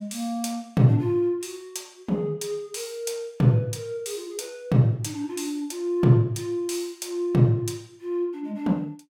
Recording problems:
none

